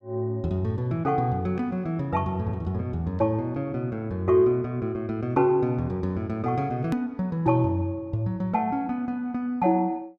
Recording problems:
edit click; at 7 s

